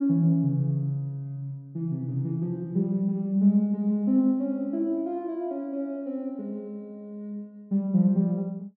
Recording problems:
none

